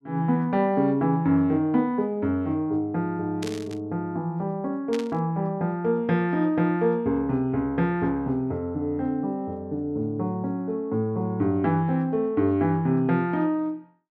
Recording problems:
static burst; at 3.5 s and at 5 s; peak -7 dB vs average level

